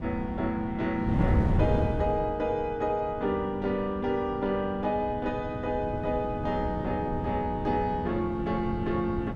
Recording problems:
wind on the microphone; below 220 Hz, SNR 5 dB

